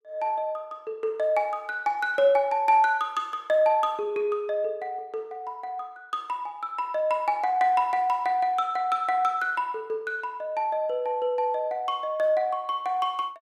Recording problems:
none

